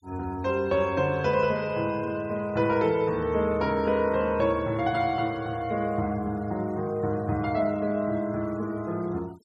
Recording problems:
denoising artefacts; signal-to-artefact ratio 26 dB

